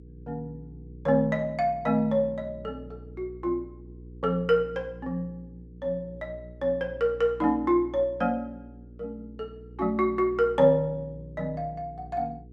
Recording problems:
electrical hum; 60 Hz, harmonics up to 480 Hz, SNR 19 dB

